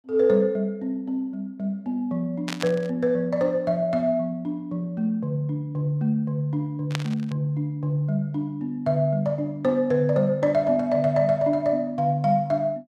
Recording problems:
static burst; at 2.5 s and at 7 s; peak -1 dB vs average level

